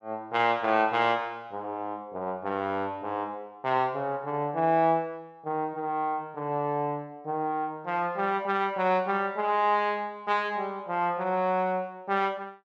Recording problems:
none

